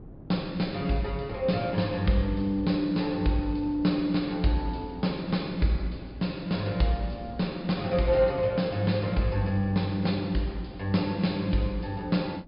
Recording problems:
treble missing; nothing above 5 kHz
wind on the microphone; below 290 Hz, SNR 20 dB

